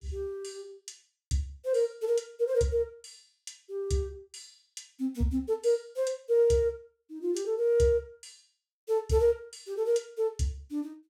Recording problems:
none

